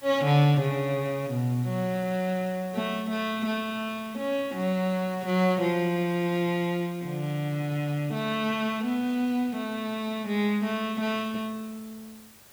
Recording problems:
hiss; slope -2 dB per octave, SNR 22 dB

